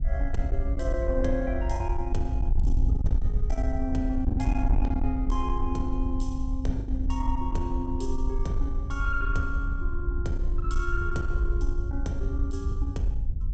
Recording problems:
treble cut off; nothing above 8 kHz
distortion; soft clipping, signal-to-distortion ratio 12 dB
wind noise; below 62 Hz, SNR -2 dB
lost packets; 2% of the sound replaced, filled with the last packet

